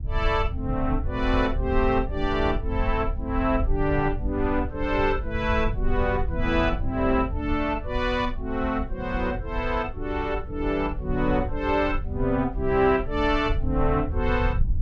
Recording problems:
low-frequency rumble; below 76 Hz, SNR 6 dB

